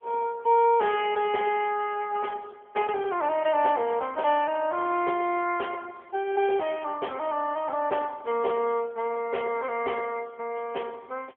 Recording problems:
phone line; 320 Hz to 3.2 kHz, AMR-NB

